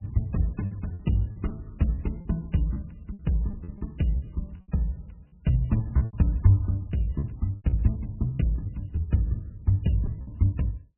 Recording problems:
lossy codec; MP3, log-spectral distance 2 dB, nothing above 2.8 kHz
lost packets; 9% of the sound replaced, filled with repeated pitch periods

